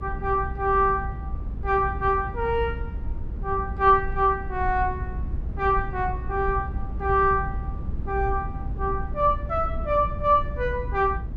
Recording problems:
rumble; below 92 Hz, SNR 8 dB

